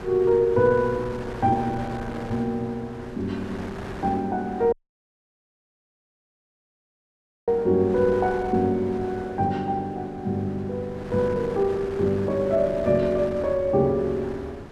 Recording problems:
wind on the microphone; below 1.1 kHz, SNR 15 dB
audio cutting out; at 4.5 s for 3 s

